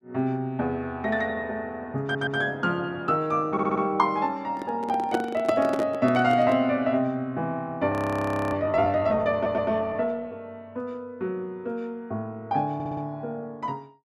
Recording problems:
audio stuttering; 4 times, first at 2 s
microphone handling noise; from 4.5 to 6.5 s; peak +4 dB vs average level
audio freezing; at 8 s for 0.5 s

